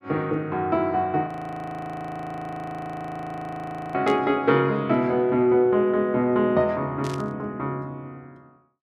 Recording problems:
frozen audio; at 1.5 s for 2.5 s
static burst; at 4 s and at 7 s; peak -10 dB vs average level

